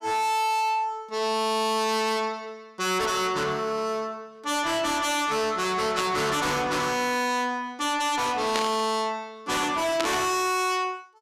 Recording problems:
distortion; soft clipping, signal-to-distortion ratio 6 dB
burst of static; at 6 s, at 8.5 s and at 10 s; peak +1 dB vs average level

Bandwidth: 14.5 kHz